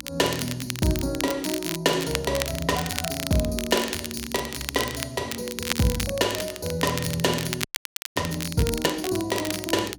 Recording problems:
electrical hum; 60 Hz, harmonics up to 300 Hz, SNR 23 dB
crackling; vinyl, SNR 6 dB
audio freezing; at 7.5 s for 0.5 s

